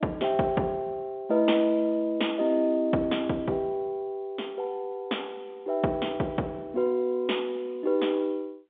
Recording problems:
telephone audio; 170 Hz to 3.6 kHz, G.711

